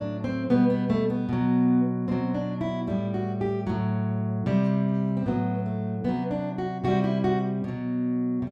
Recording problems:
none

